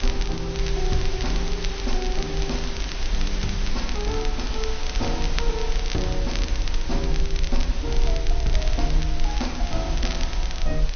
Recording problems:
low-pass filter; nothing above 6.3 kHz
background hiss; slope -2 dB per octave, SNR 3 dB
low-frequency rumble; below 44 Hz, SNR -2 dB
crackle; vinyl, SNR 6 dB

